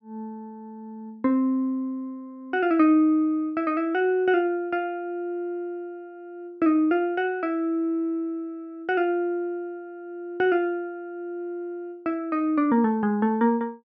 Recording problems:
none

